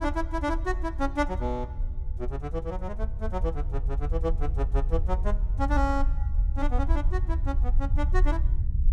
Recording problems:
low-frequency rumble; below 62 Hz, SNR -3 dB

